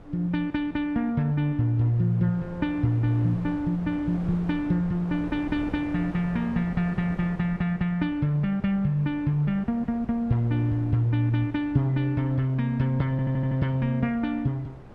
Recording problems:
wind on the microphone; below 490 Hz, SNR 17 dB
audio stuttering; at 13 s

